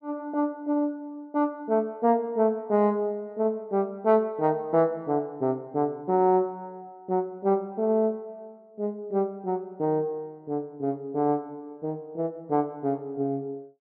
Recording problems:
none

